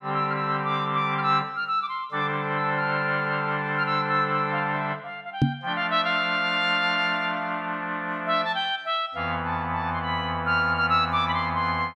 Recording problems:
knock on the microphone; at 5.5 s; peak +7 dB vs average level

